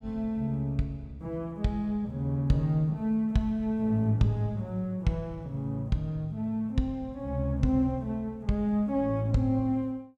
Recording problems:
none

